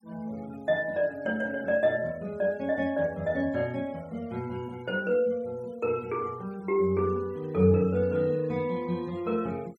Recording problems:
noise reduction artefacts; signal-to-artefact ratio 26 dB

